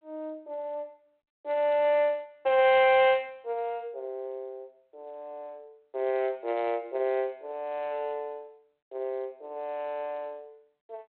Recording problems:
telephone audio; 320 Hz to 3.4 kHz, G.726

